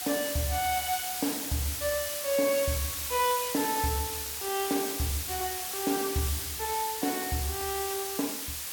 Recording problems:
hiss; slope +2 dB per octave, SNR 1 dB

